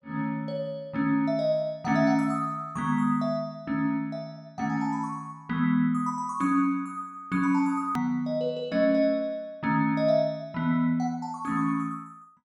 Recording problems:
click at an edit; at 8 s

